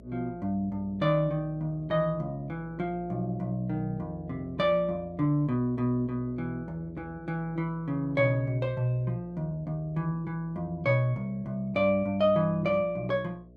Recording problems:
electrical hum; 60 Hz, harmonics up to 660 Hz, SNR 22 dB

